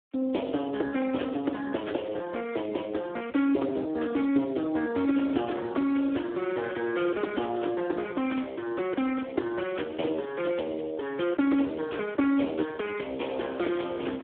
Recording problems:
telephone audio; 240 Hz to 3.4 kHz, Speex

